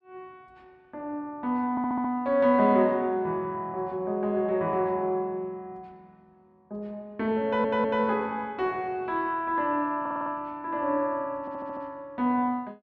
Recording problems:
audio stuttering; 4 times, first at 1.5 s

